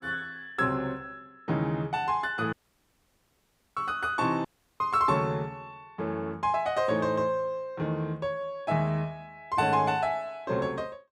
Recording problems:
dropout; at 2.5 s for 1 s and at 4.5 s

